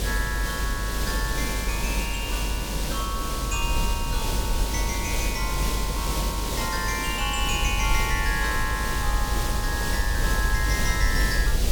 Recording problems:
hiss; SNR 1 dB
rumble; below 52 Hz, strongest tone 48 Hz, SNR 1 dB

